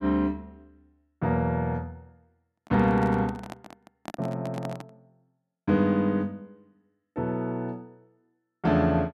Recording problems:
microphone handling noise; from 2.5 to 5 s; peak -5 dB vs average level

